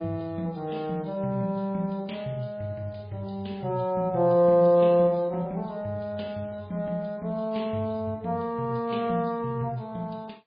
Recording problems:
lossy compression; AAC, then MP3, log-spectral distance 2 dB, nothing above 4.1 kHz

